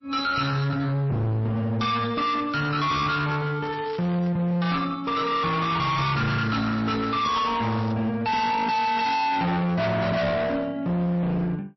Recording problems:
lossy codec; MP3, log-spectral distance 3 dB, nothing above 5.7 kHz
distorted audio; hard clipping, uneven, signal-to-distortion ratio 6 dB
crackling; at 3.5 s and from 5.5 to 8 s; loose cable, SNR 20 dB

